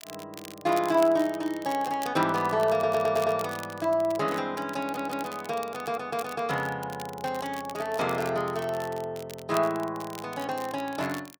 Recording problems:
crackling; vinyl, SNR 17 dB
audio stuttering; at 2.5 s, at 5 s and at 5.5 s

